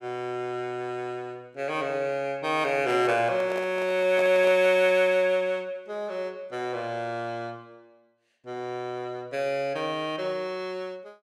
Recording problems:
microphone handling noise; from 2.5 to 5 s; peak -6 dB vs average level

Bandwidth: 15.5 kHz